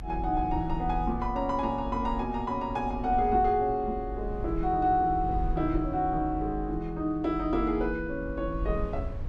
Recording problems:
rumble; below 66 Hz, strongest tone 44 Hz, SNR 9 dB

